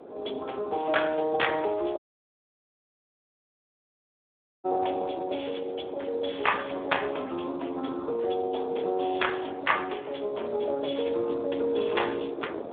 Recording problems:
phone line; 300 Hz to 3.5 kHz, Speex
wind on the microphone; below 610 Hz, SNR 14 dB
dropout; at 2 s for 2.5 s

